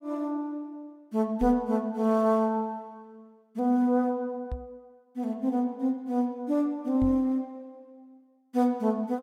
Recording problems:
knock on the microphone; at 1.5 s, at 4.5 s and at 7 s; peak -2 dB vs average level

